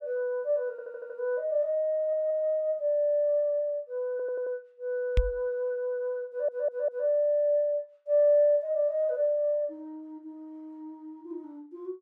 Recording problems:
stutter; 4 times, first at 0.5 s
knock on the microphone; at 5 s; peak +5 dB vs average level

